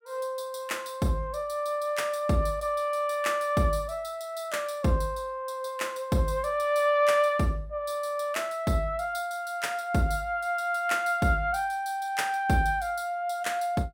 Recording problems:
none

